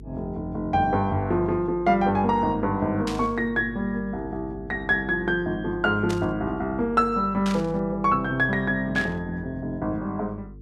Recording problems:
electrical hum; 50 Hz, harmonics up to 450 Hz, SNR 17 dB
static burst; 4 times, first at 3 s; peak -5 dB vs average level

